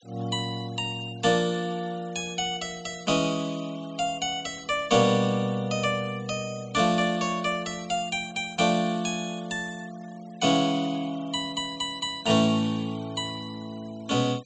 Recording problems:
treble cut off; nothing above 8 kHz
noise reduction artefacts; signal-to-artefact ratio 25 dB

